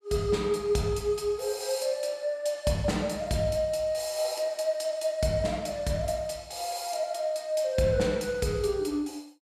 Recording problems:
none

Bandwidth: 14.5 kHz